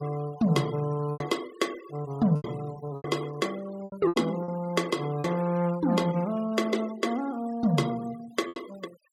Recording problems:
denoising artefacts; signal-to-artefact ratio 17 dB
lost packets; 6% of the sound replaced, filled with repeated pitch periods

